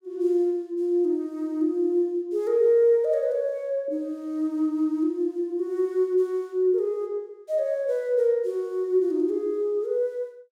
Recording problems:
none

